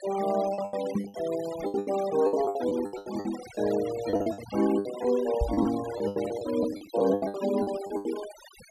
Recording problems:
noise reduction artefacts; signal-to-artefact ratio 14 dB
lost packets; 18% of the sound replaced, filled with the last packet
knock on the microphone; at 1 s and at 5.5 s; peak +5 dB vs average level

